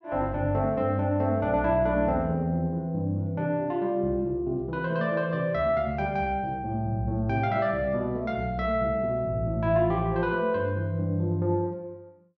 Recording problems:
none

